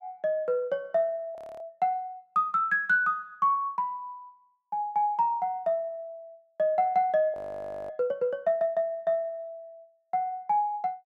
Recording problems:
frozen audio; at 1.5 s and at 7.5 s for 0.5 s

